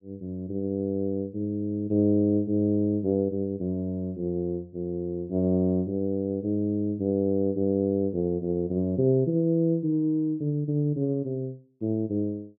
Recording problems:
none

